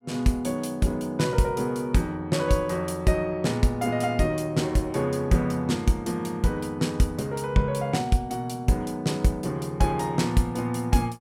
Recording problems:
none

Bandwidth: 16.5 kHz